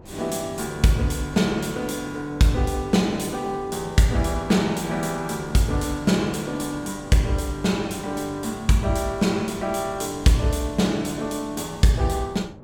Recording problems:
hum; 50 Hz, harmonics up to 500 Hz, SNR 23 dB
wind on the microphone; below 400 Hz, SNR 22 dB

